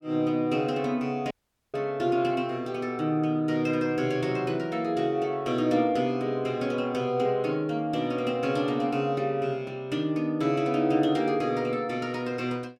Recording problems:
audio cutting out; at 1.5 s

